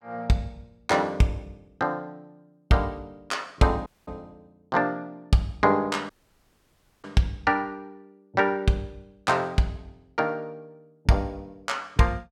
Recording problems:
audio cutting out; at 4 s and at 6 s for 1 s

